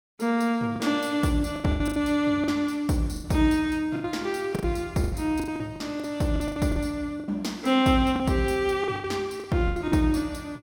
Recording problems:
lost packets; 13% of the sound replaced, filled with the last packet

